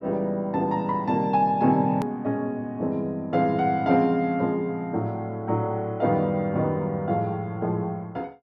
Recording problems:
hard cut with a click; at 2 s

